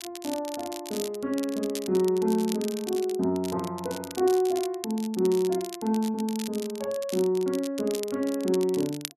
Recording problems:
crackling; vinyl, SNR 13 dB

